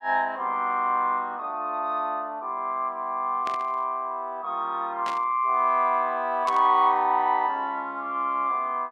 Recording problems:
static burst; at 3.5 s, at 5 s and at 6.5 s; peak -7 dB vs average level

